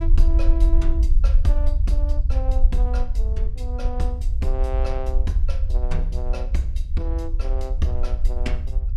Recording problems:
low-frequency rumble; below 54 Hz, SNR -9 dB

